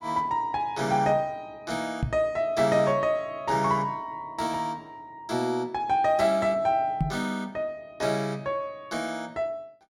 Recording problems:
microphone thump; at 2 s and at 7 s; peak +4 dB vs average level

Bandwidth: 16 kHz